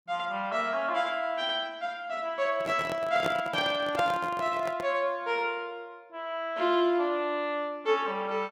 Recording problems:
handling noise; from 2.5 to 5 s; peak +1 dB vs average level

